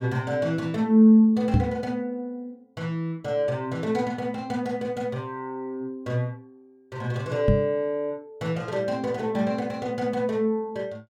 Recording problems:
microphone bump; at 1.5 s and at 7.5 s; peak +7 dB vs average level

